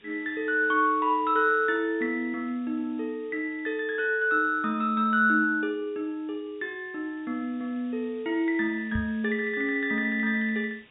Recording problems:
low-pass filter; nothing above 4 kHz
hiss; SNR 29 dB
knock on the microphone; at 9 s; peak -2 dB vs average level

